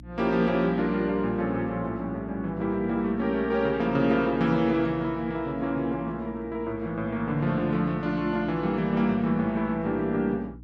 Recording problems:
hum; 60 Hz, harmonics up to 300 Hz, SNR 19 dB

